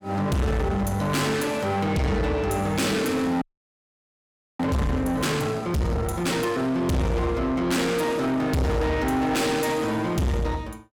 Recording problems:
distortion; soft clipping, signal-to-distortion ratio 6 dB
audio freezing; at 3.5 s for 1 s

